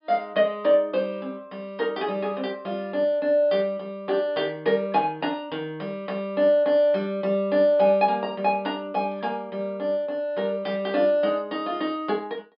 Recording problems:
treble cut off; nothing above 5.5 kHz

